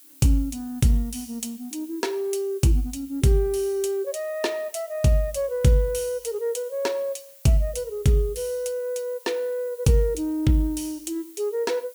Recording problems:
background hiss; slope +4 dB per octave, SNR 22 dB

